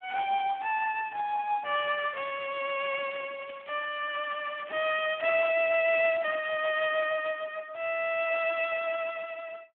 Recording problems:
phone line; 240 Hz to 3.3 kHz, Speex
crackle; from 2 to 4 s and from 4 to 7 s; loose cable, SNR 20 dB

